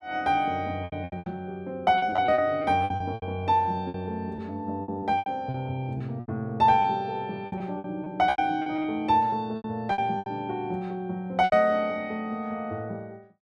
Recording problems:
packet loss; 12% of the sound replaced, filled with repeated pitch periods

